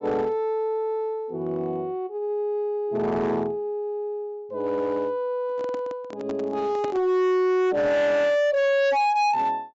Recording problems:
low-pass filter; nothing above 8 kHz
distortion; hard clipping, signal-to-distortion ratio 7 dB
microphone handling noise; from 5.5 to 7 s; peak -6 dB vs average level

